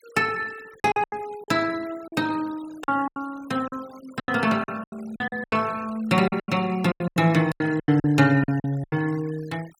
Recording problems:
denoising artefacts; signal-to-artefact ratio 22 dB
packet loss; 15% of the sound replaced, filled with silence

